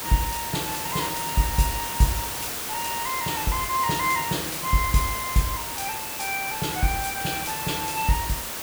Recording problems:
background hiss; slope -2 dB per octave, SNR 2 dB

